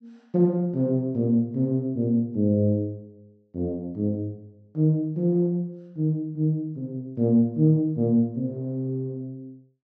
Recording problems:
low-pass filter; nothing above 8 kHz

